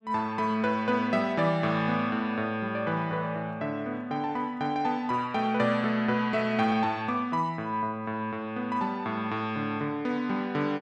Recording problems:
none

